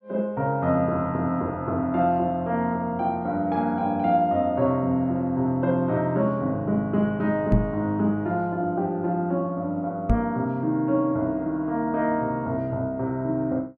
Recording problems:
microphone bump; at 7.5 s and at 10 s; peak +6 dB vs average level

